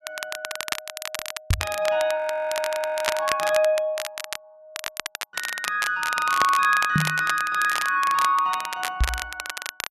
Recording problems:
crackle; vinyl, SNR 8 dB
knock on the microphone; at 1.5 s, at 7 s and at 9 s; peak +4 dB vs average level
frozen audio; at 2 s for 1 s

